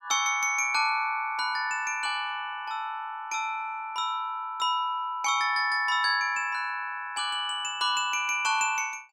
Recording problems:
none

